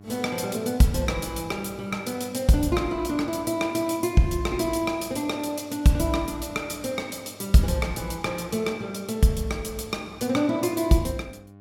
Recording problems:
hum; 50 Hz, harmonics up to 1.4 kHz, SNR 23 dB

